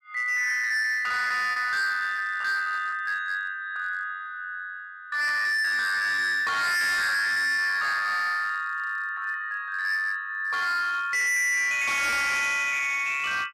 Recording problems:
distortion; hard clipping, signal-to-distortion ratio 7 dB
lost packets; 3% of the sound replaced, filled with repeated pitch periods

